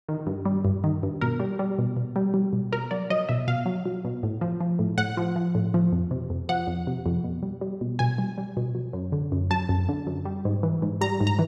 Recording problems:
none

